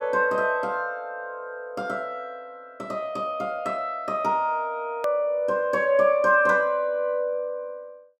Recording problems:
hard cut with a click; at 5 s

